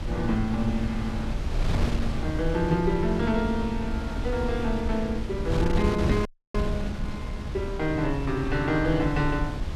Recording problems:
wind noise; below 130 Hz, SNR 3 dB
frozen audio; at 6.5 s

